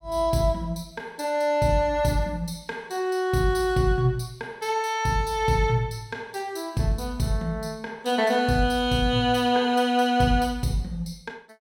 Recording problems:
none

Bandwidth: 16.5 kHz